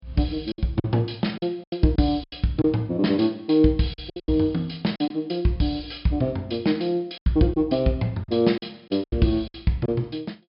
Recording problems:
treble missing; nothing above 5.5 kHz
lost packets; 9% of the sound replaced, filled with silence

